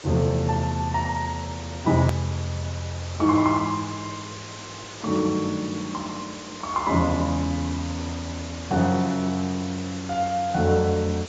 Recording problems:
lossy codec; AAC, log-spectral distance 12 dB, nothing above 13.1 kHz
background hiss; slope -2 dB per octave, SNR 13 dB
edit click; at 2 s

